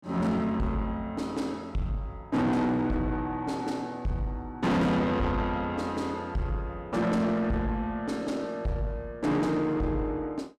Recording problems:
distorted audio; soft clipping, signal-to-distortion ratio 7 dB

